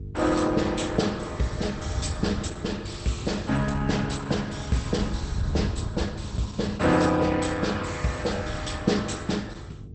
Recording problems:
lossy codec; Opus, log-spectral distance 4 dB, nothing above 8.2 kHz
hum; 50 Hz, harmonics up to 450 Hz, SNR 14 dB
wind on the microphone; below 100 Hz, SNR 8 dB

